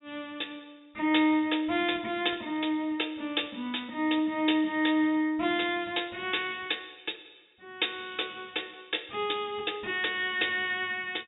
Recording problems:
treble missing; nothing above 4 kHz

